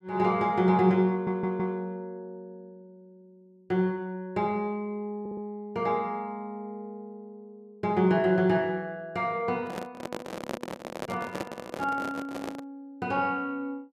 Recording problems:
stutter; at 1 s and at 5 s
handling noise; from 9.5 to 13 s; peak -1 dB vs average level

